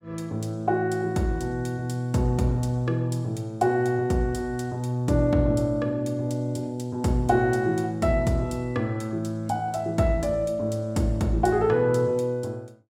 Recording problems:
none

